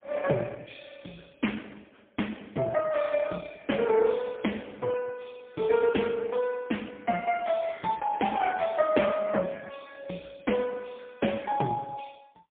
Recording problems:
phone line; 170 Hz to 3.5 kHz, AMR-NB, then MP3

